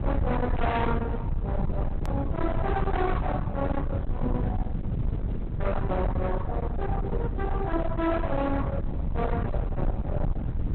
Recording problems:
lossy codec; Opus, log-spectral distance 2 dB
distorted audio; hard clipping, uneven, signal-to-distortion ratio 6 dB
low-frequency rumble; below 140 Hz, SNR 0 dB
edit click; at 2 s

